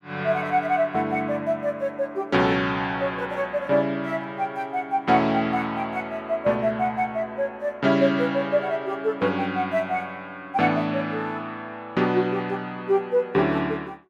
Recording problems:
none

